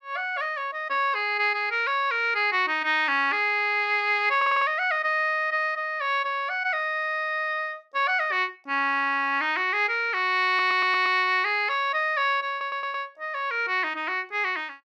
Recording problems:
stutter; at 4.5 s, at 10 s and at 13 s

